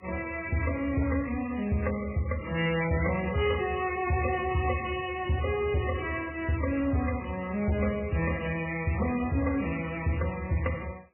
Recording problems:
codec artefacts; MP3, then MP3, log-spectral distance 6 dB, nothing above 2.6 kHz
distorted audio; soft clipping, signal-to-distortion ratio 12 dB

